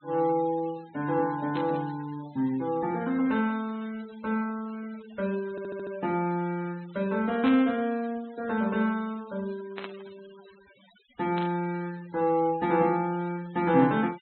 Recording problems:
low-pass filter; nothing above 4.1 kHz
denoising artefacts; signal-to-artefact ratio 22 dB
static burst; 4 times, first at 1.5 s; peak -5 dB vs average level
audio stuttering; at 5.5 s

